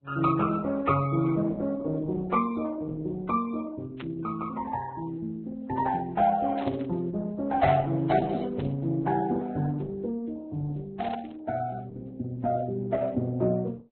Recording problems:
lossy codec; Opus, then Vorbis, log-spectral distance 3 dB, nothing above 4 kHz
static burst; 4 times, first at 4 s; peak -8 dB vs average level

